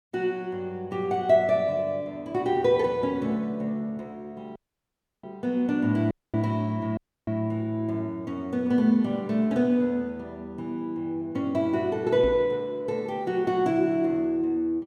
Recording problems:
audio cutting out; at 4.5 s for 0.5 s, at 6 s and at 7 s
microphone thump; at 12 s; peak -4 dB vs average level

